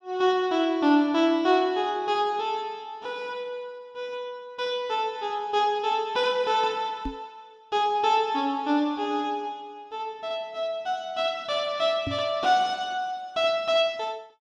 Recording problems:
microphone bump; at 7 s and at 12 s; peak -3 dB vs average level

